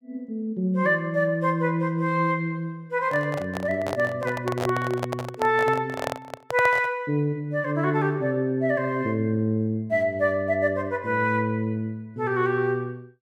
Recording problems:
handling noise; from 3 to 7 s; peak 0 dB vs average level

